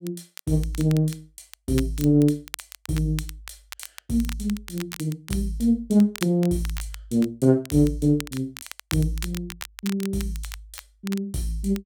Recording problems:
crackle; vinyl, SNR 15 dB

